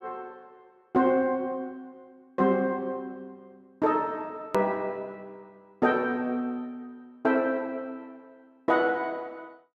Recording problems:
click at an edit; at 4.5 s

